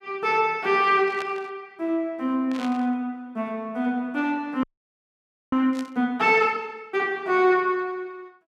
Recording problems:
burst of static; at 1 s, at 2.5 s and at 5.5 s; peak -8 dB vs average level
audio freezing; at 4.5 s for 1 s

